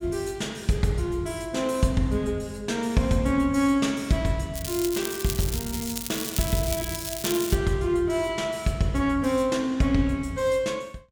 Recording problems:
crackling; from 4.5 to 7.5 s; loose cable, SNR 6 dB

